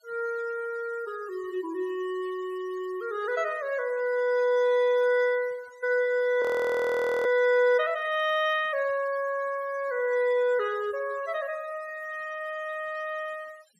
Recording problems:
denoising artefacts; signal-to-artefact ratio 23 dB
frozen audio; at 6.5 s for 1 s

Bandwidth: 15 kHz